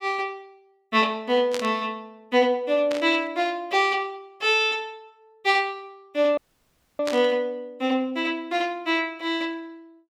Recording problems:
static burst; at 1.5 s, at 3 s and at 7 s; peak -4 dB vs average level
audio cutting out; at 6.5 s for 0.5 s

